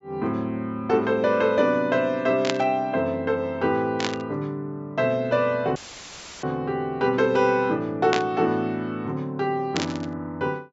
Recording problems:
treble missing; nothing above 8 kHz
static burst; 4 times, first at 2.5 s; peak +3 dB vs average level
dropout; at 6 s for 0.5 s; filled with static

